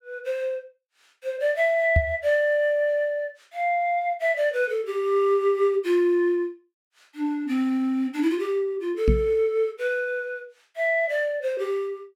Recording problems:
knock on the microphone; at 2 s and at 9 s; peak +6 dB vs average level

